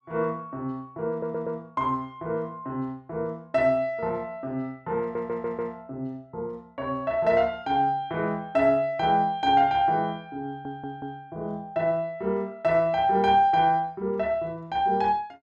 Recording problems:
audio stuttering; at 1 s, at 5 s and at 10 s

